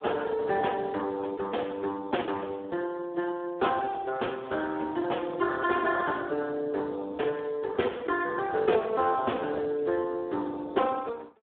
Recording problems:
telephone audio; 260 Hz to 3.6 kHz, Speex

